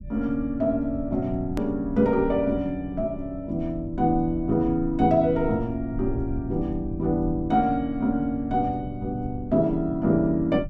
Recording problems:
rumble; below 110 Hz, SNR 13 dB
hard cut with a click; at 1.5 s

